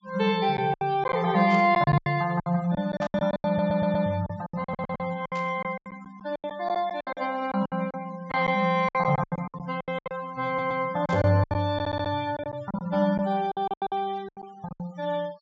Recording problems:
treble cut off; nothing above 8 kHz
denoising artefacts; signal-to-artefact ratio 23 dB
packet loss; 16% of the sound replaced, filled with silence
burst of static; 4 times, first at 1.5 s; peak -13 dB vs average level
audio stuttering; 4 times, first at 3.5 s

